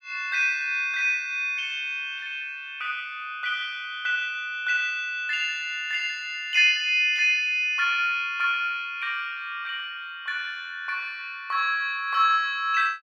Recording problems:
none

